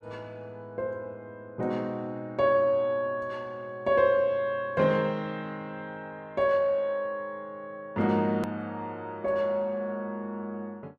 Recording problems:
hard cut with a click; at 8.5 s

